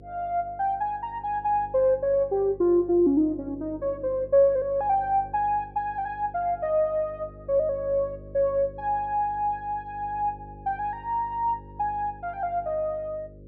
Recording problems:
low-pass filter; nothing above 5.5 kHz
hum; 50 Hz, harmonics up to 550 Hz, SNR 20 dB

